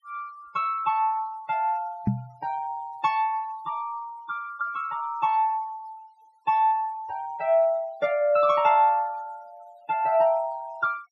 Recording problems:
noise reduction artefacts; signal-to-artefact ratio 25 dB
microphone thump; at 2 s; peak +5 dB vs average level

